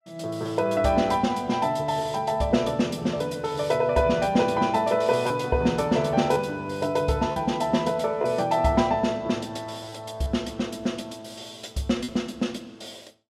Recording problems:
lost packets; 1.5% of the sound replaced, filled with repeated pitch periods

